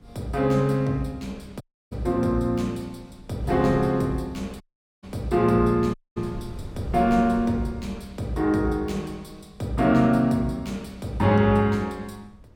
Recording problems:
wind noise; below 190 Hz, SNR 19 dB
dropout; at 1.5 s, at 4.5 s and at 6 s

